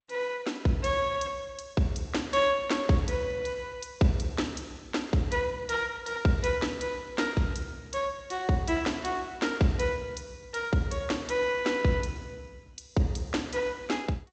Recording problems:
lossy codec; G.722, log-spectral distance 4 dB, nothing above 7.6 kHz

